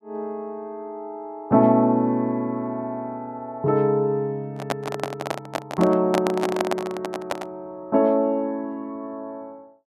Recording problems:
microphone handling noise; from 4.5 to 7.5 s; peak +3 dB vs average level

